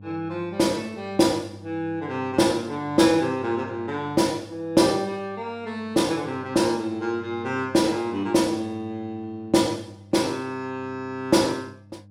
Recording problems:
hum; 50 Hz, harmonics up to 500 Hz, SNR 21 dB

